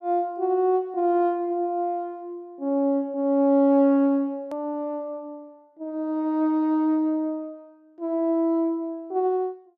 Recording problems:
hard cut with a click; at 4.5 s

